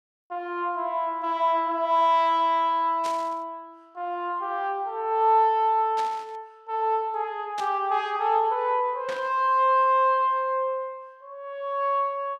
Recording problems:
burst of static; 4 times, first at 3 s; peak -9 dB vs average level

